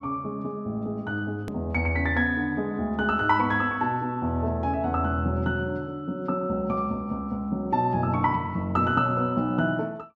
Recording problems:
hard cut with a click; at 1.5 s

